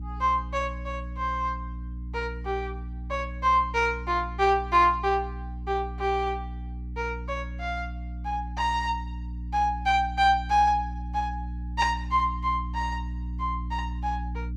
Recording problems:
electrical hum; 60 Hz, harmonics up to 300 Hz, SNR 9 dB

